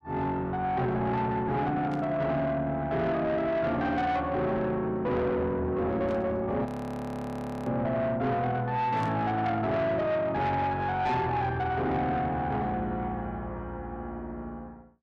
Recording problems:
distorted audio; soft clipping, signal-to-distortion ratio 10 dB
burst of static; at 2 s, at 6 s and at 9 s; peak -15 dB vs average level
audio freezing; at 6.5 s for 1 s

